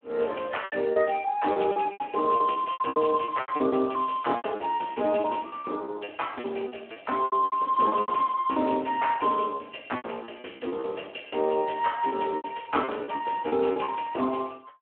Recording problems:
phone line; 240 Hz to 3.2 kHz, Speex
packet loss; 16% of the sound replaced, filled with repeated pitch periods

